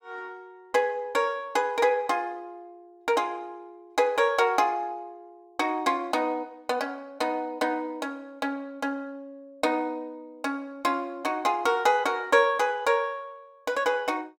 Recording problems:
none

